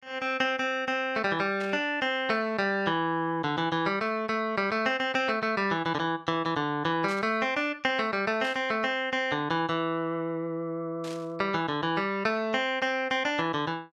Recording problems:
static burst; 4 times, first at 1.5 s; peak -9 dB vs average level

